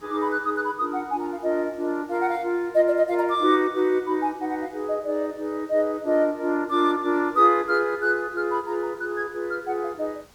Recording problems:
hiss; slope -3 dB per octave, SNR 29 dB

